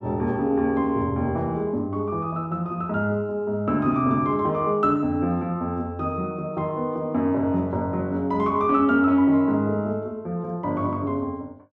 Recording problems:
none

